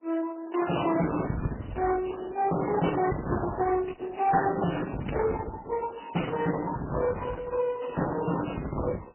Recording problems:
lossy codec; Opus, then MP3, log-spectral distance 6 dB, nothing above 3 kHz
distorted audio; soft clipping, signal-to-distortion ratio 7 dB

